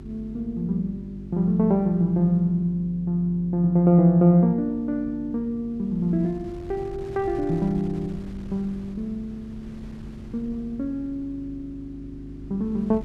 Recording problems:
hum; 50 Hz, harmonics up to 400 Hz, SNR 18 dB
wind on the microphone; below 160 Hz, SNR 22 dB

